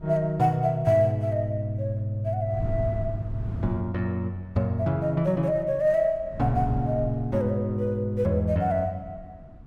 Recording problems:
wind on the microphone; below 150 Hz, SNR 13 dB

